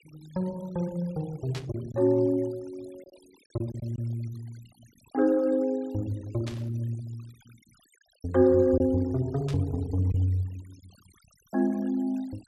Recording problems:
denoising artefacts; signal-to-artefact ratio 27 dB
packet loss; 1.9% of the sound replaced, filled with silence
static burst; at 1.5 s, at 6.5 s and at 9.5 s; peak -8 dB vs average level

